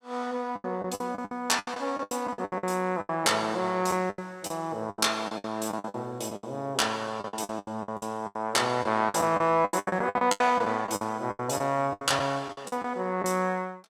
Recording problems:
packet loss; 18% of the sound replaced, filled with the last packet

